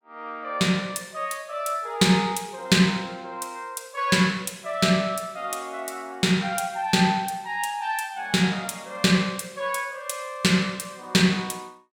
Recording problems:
none

